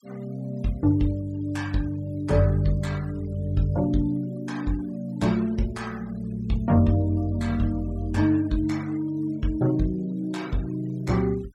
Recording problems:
denoising artefacts; signal-to-artefact ratio 25 dB

